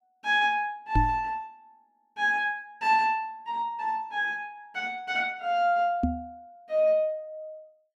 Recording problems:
microphone bump; at 1 s and at 6 s; peak +5 dB vs average level

